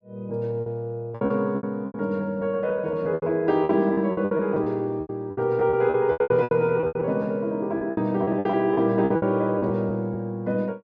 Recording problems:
lost packets; 16% of the sound replaced, filled with repeated pitch periods

